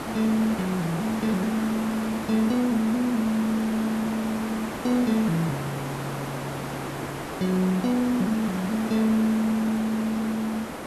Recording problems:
background hiss; slope -7 dB per octave, SNR 7 dB

